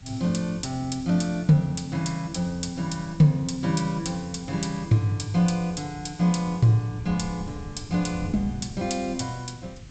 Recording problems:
low-pass filter; nothing above 8 kHz
background hiss; slope 0 dB per octave, SNR 28 dB
wind noise; below 160 Hz, SNR 17 dB

